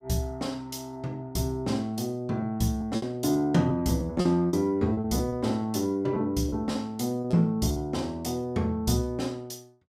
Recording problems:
lost packets; 7% of the sound replaced, filled with repeated pitch periods

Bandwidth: 15.5 kHz